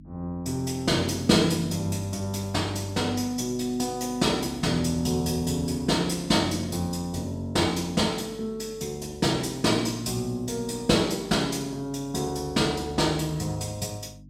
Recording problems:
hum; 50 Hz, harmonics up to 300 Hz, SNR 21 dB

